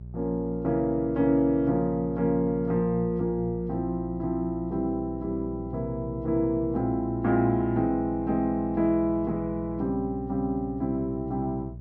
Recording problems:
hum; 60 Hz, harmonics up to 420 Hz, SNR 13 dB

